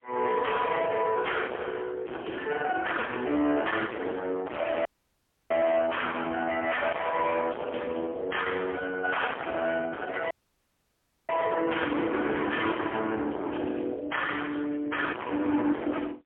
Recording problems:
phone line; 240 Hz to 3.3 kHz, AMR-NB, then MP3
distorted audio; soft clipping, signal-to-distortion ratio 5 dB
audio cutting out; at 5 s for 0.5 s and at 10 s for 1 s

